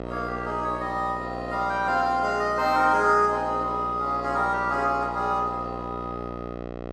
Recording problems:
hum; 60 Hz, harmonics up to 2.6 kHz, SNR 11 dB

